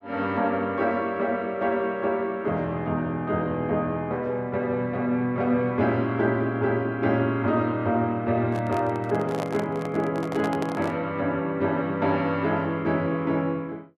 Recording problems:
handling noise; from 8.5 to 11 s; peak -3 dB vs average level

